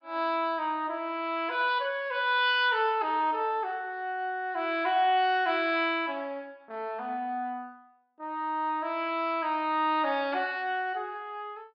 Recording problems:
treble cut off; nothing above 5.5 kHz

